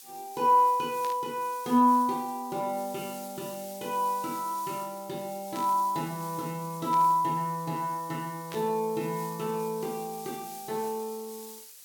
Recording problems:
hiss; SNR 16 dB
static burst; 4 times, first at 1 s; peak -9 dB vs average level

